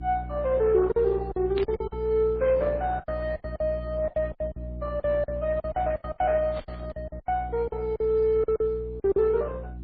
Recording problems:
lossy codec; Opus, then MP3, log-spectral distance 2 dB
mains hum; 60 Hz, harmonics up to 360 Hz, SNR 11 dB
packet loss; 14% of the sound replaced, filled with silence
burst of static; at 1.5 s and at 6.5 s; peak -6 dB vs average level

